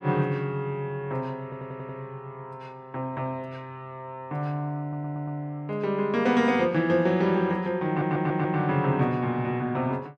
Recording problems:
stutter; at 1.5 s, at 5 s and at 8 s

